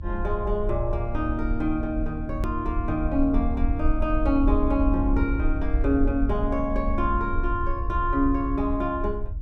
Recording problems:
hum; 50 Hz, harmonics up to 400 Hz, SNR 17 dB
rumble; below 62 Hz, SNR 3 dB
click at an edit; at 2.5 s

